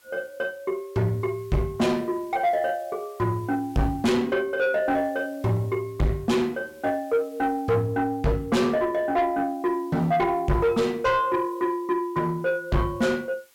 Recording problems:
distortion; soft clipping, signal-to-distortion ratio 7 dB
background hiss; slope 0 dB per octave, SNR 30 dB

